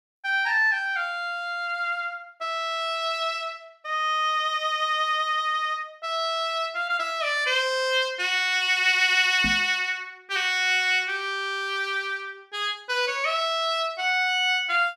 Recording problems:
microphone bump; at 9.5 s; peak -4 dB vs average level

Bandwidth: 14.5 kHz